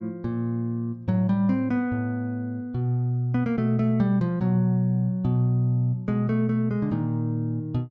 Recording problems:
none

